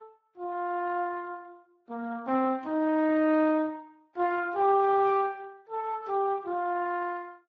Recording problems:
lossy codec; Vorbis, then Speex, log-spectral distance 2 dB

